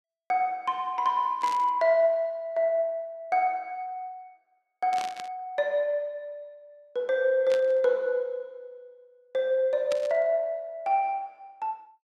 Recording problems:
static burst; 4 times, first at 1.5 s; peak -6 dB vs average level

